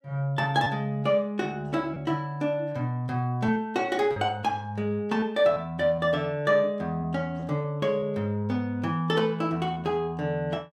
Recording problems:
lost packets; 4% of the sound replaced, filled with repeated pitch periods

